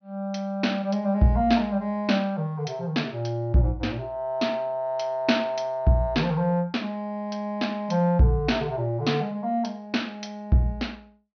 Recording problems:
treble missing; nothing above 6.1 kHz

